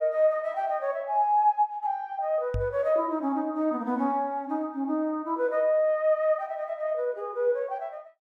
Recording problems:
microphone bump; at 2.5 s; peak -1 dB vs average level

